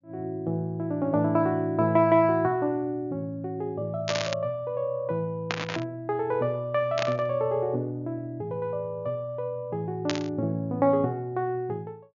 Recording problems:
low-pass filter; nothing above 7 kHz
static burst; 4 times, first at 4 s; peak +3 dB vs average level

